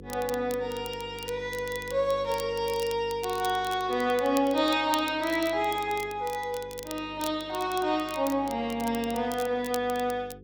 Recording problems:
hum; 50 Hz, harmonics up to 500 Hz, SNR 19 dB
crackle; vinyl, SNR 15 dB

